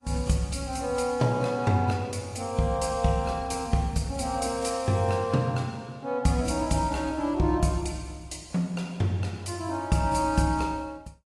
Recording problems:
lossy codec; AAC, log-spectral distance 3 dB

